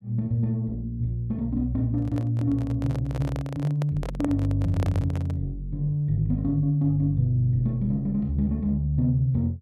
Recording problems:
microphone handling noise; from 2 to 5.5 s; peak -3 dB vs average level

